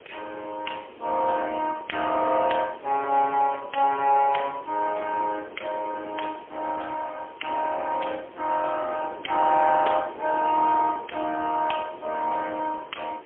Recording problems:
telephone audio; 370 Hz to 3.2 kHz, AMR-NB, then MP3
hiss; SNR 27 dB
wind noise; below 600 Hz, SNR 19 dB

